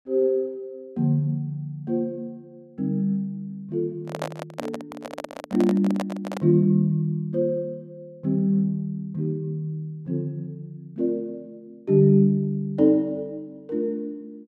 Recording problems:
handling noise; from 4 to 6.5 s; peak -2 dB vs average level

